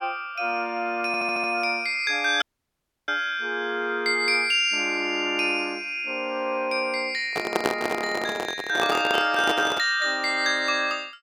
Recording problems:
audio stuttering; at 1 s
audio cutting out; at 2.5 s for 0.5 s
microphone handling noise; from 7.5 to 10 s; peak +4 dB vs average level

